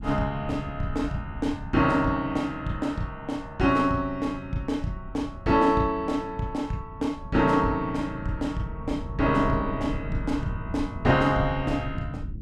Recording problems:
rumble; below 150 Hz, SNR 12 dB

